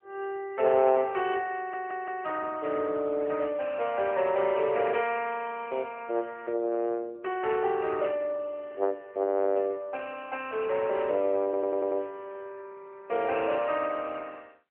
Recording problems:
phone line; 340 Hz to 3.1 kHz, AMR-NB
stutter; at 1.5 s and at 11 s

